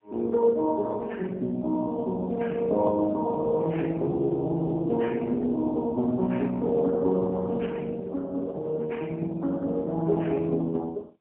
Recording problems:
phone line; 190 Hz to 2.5 kHz, AMR-NB, then MP3

